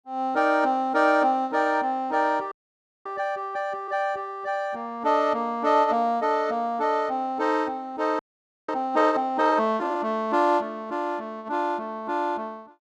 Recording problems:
frozen audio; at 2.5 s for 0.5 s and at 8 s

